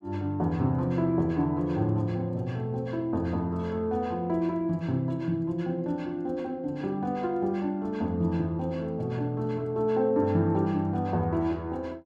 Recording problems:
none

